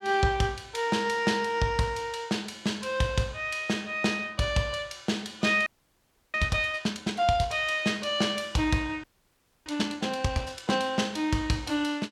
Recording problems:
audio freezing; at 5.5 s for 0.5 s and at 9 s for 0.5 s

